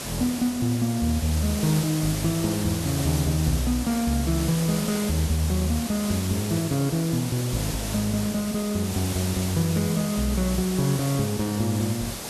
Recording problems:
hiss; slope -3 dB per octave, SNR 7 dB

